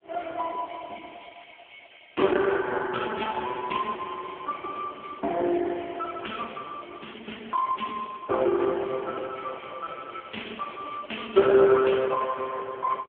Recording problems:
telephone audio; 260 Hz to 3.4 kHz, AMR-NB

